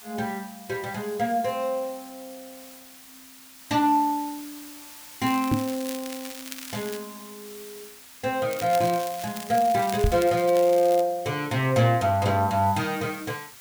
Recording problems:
background hiss; slope +1 dB per octave, SNR 18 dB
crackling; from 5 to 7 s and from 8.5 to 11 s; loose cable, SNR 14 dB
microphone bump; at 5.5 s and at 10 s; peak +5 dB vs average level

